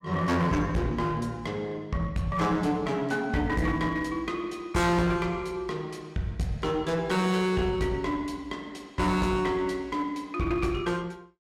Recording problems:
distorted audio; hard clipping, uneven, signal-to-distortion ratio 10 dB

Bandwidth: 16.5 kHz